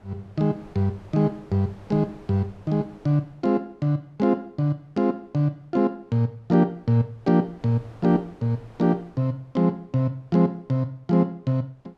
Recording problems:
wind noise; below 810 Hz, SNR 26 dB

